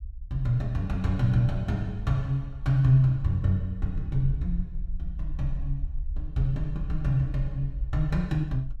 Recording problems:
rumble; below 52 Hz, SNR 10 dB

